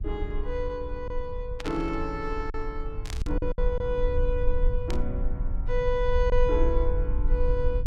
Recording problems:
low-frequency rumble; below 48 Hz, SNR 1 dB
lost packets; 3% of the sound replaced, filled with silence
static burst; at 1.5 s, at 3 s and at 5 s; peak -3 dB vs average level

